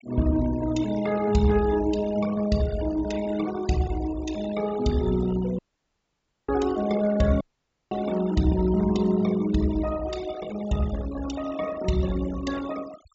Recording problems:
treble missing; nothing above 8 kHz
denoising artefacts; signal-to-artefact ratio 17 dB
dropout; at 5.5 s for 1 s and at 7.5 s for 0.5 s

